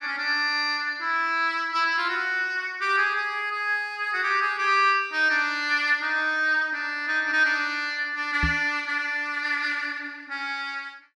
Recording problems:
knock on the microphone; at 8.5 s; peak 0 dB vs average level

